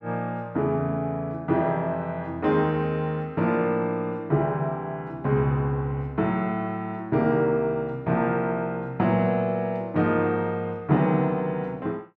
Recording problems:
none

